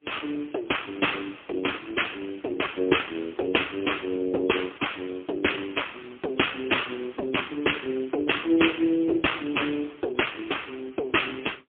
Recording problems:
telephone audio; 260 Hz to 3.4 kHz, AMR-NB, then MP3

